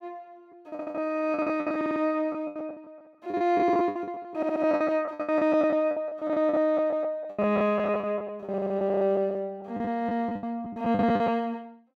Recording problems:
lost packets; 19% of the sound replaced, filled with the last packet
audio stuttering; 4 times, first at 0.5 s

